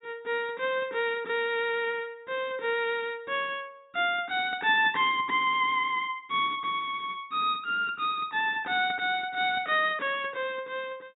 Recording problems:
low-pass filter; nothing above 4 kHz

